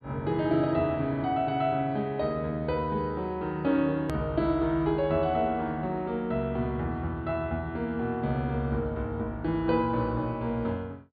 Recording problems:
treble missing; nothing above 4.7 kHz
hard cut with a click; at 4 s

